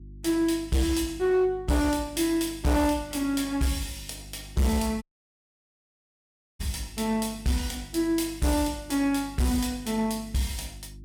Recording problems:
distorted audio; hard clipping, uneven, signal-to-distortion ratio 11 dB
electrical hum; 50 Hz, harmonics up to 350 Hz, SNR 19 dB
dropout; at 5 s for 1.5 s

